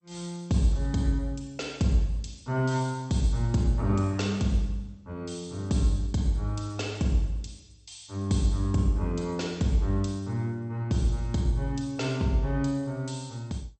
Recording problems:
lossy codec; MP2, log-spectral distance 4 dB, nothing above 8.5 kHz

